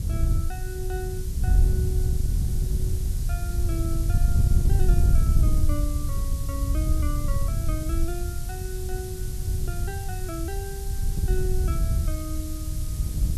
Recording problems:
hiss; slope +4 dB per octave, SNR 3 dB
wind on the microphone; below 86 Hz, SNR -11 dB

